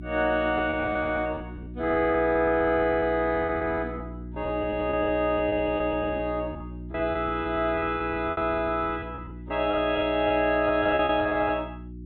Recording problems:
low-pass filter; nothing above 4 kHz
hum; 60 Hz, harmonics up to 360 Hz, SNR 13 dB
lost packets; 13% of the sound replaced, filled with repeated pitch periods

